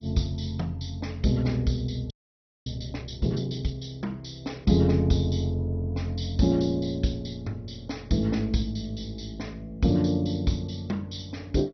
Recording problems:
lossy codec; MP2, log-spectral distance 4 dB, nothing above 5.8 kHz
frozen audio; at 2 s for 0.5 s

